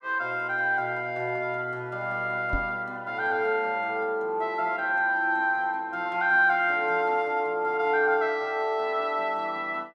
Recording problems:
knock on the microphone; at 2.5 s; peak -2 dB vs average level

